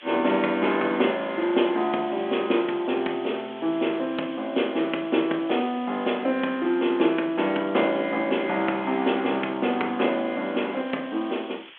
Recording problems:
phone line; 220 Hz to 3.4 kHz, G.726
hiss; SNR 20 dB

